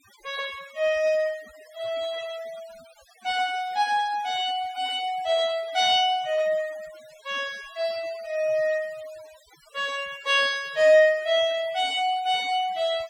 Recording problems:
noise reduction artefacts; signal-to-artefact ratio 22 dB

